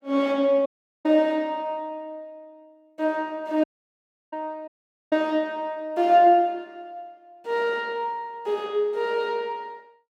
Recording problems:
audio cutting out; at 0.5 s, at 3.5 s for 0.5 s and at 4.5 s

